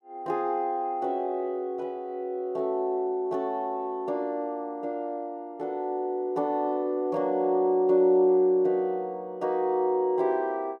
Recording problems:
none

